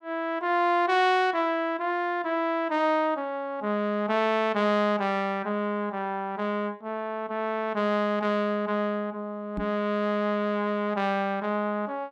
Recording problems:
microphone bump; at 9.5 s; peak -3 dB vs average level

